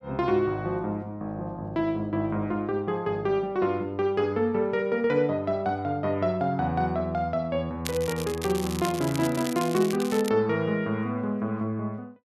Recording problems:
crackling; from 8 to 10 s; loose cable, SNR 11 dB

